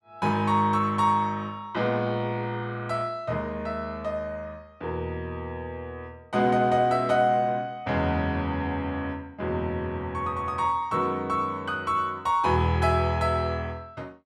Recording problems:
none

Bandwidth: 12.5 kHz